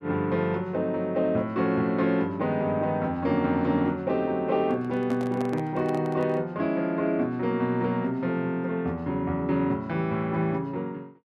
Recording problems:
handling noise; from 4.5 to 6.5 s; peak -7 dB vs average level

